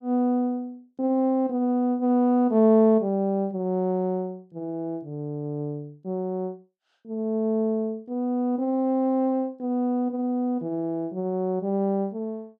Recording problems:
none

